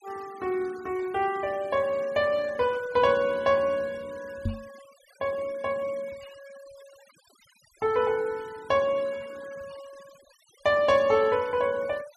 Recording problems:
noise reduction artefacts; signal-to-artefact ratio 24 dB
knock on the microphone; at 4.5 s; peak 0 dB vs average level

